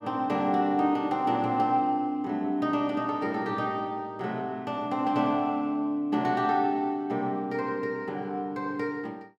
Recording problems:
none

